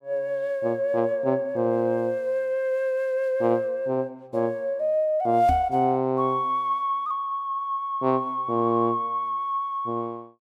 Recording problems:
knock on the microphone; at 5.5 s; peak -1 dB vs average level

